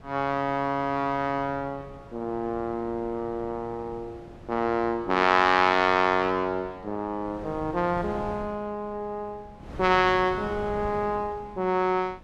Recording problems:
wind noise; below 470 Hz, SNR 18 dB

